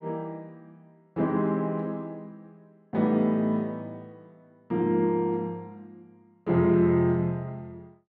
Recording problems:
none

